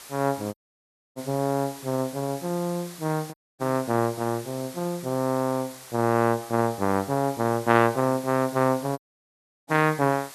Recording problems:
background hiss; slope 0 dB per octave, SNR 16 dB
dropout; at 0.5 s for 0.5 s, at 3.5 s and at 9 s for 0.5 s

